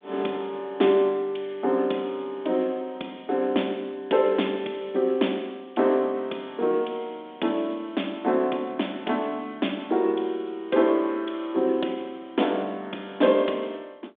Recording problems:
phone line; 220 Hz to 3.6 kHz, G.726

